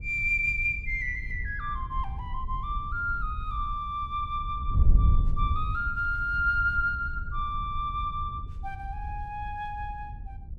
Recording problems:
wind noise; below 78 Hz, SNR 4 dB

